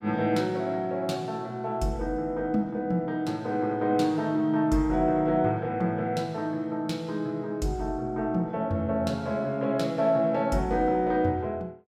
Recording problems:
none

